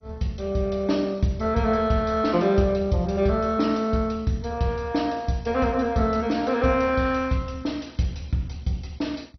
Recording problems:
codec artefacts; MP2, log-spectral distance 3 dB, nothing above 6 kHz

